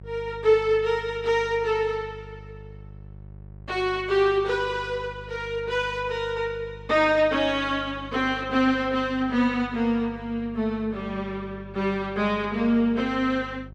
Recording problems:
hum; 50 Hz, harmonics up to 550 Hz, SNR 19 dB

